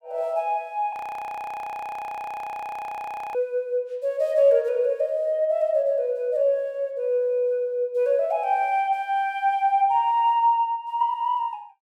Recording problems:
frozen audio; at 1 s for 2.5 s

